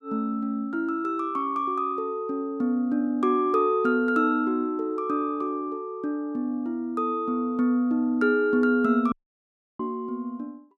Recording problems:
dropout; at 9 s for 0.5 s

